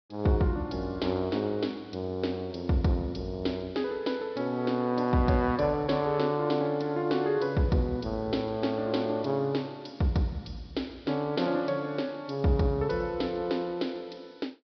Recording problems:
treble missing; nothing above 5.5 kHz

